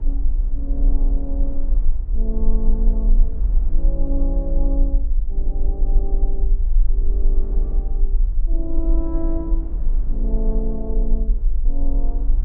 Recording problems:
rumble; below 38 Hz, strongest tone 18 Hz, SNR -9 dB
wind noise; below 260 Hz, SNR 11 dB

